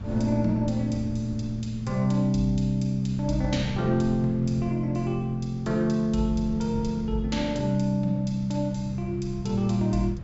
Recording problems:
treble cut off; nothing above 8 kHz
wind on the microphone; below 150 Hz, SNR 14 dB

